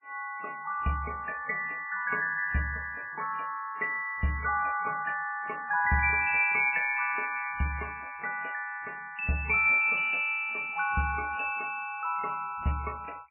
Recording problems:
lossy compression; MP3, log-spectral distance 4 dB, nothing above 2.4 kHz

